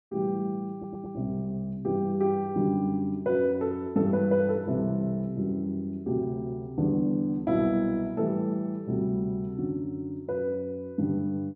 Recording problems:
audio stuttering; at 0.5 s

